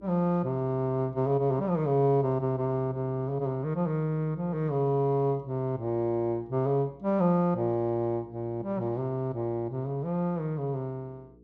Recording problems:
electrical hum; 60 Hz, harmonics up to 480 Hz, SNR 25 dB

